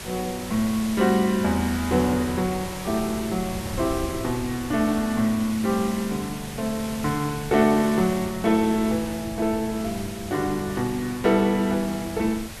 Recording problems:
hiss; slope -2 dB per octave, SNR 13 dB
wind on the microphone; below 150 Hz, SNR 16 dB

